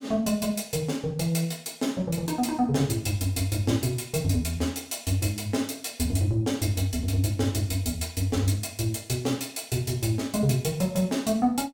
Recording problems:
none

